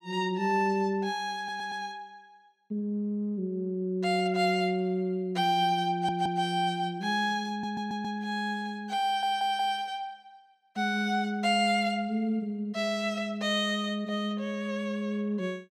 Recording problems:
audio stuttering; 4 times, first at 1.5 s

